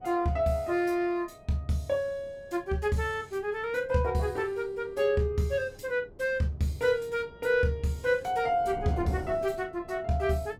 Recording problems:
wind on the microphone; below 410 Hz, SNR 19 dB

